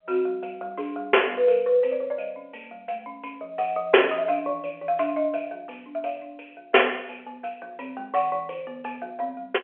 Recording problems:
phone line; 320 Hz to 3.2 kHz, G.711

